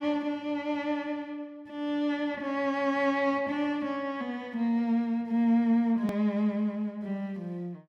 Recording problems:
edit click; at 6 s

